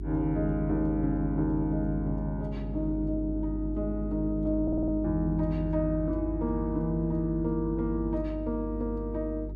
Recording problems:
hum; 50 Hz, harmonics up to 400 Hz, SNR 7 dB
stutter; at 4.5 s

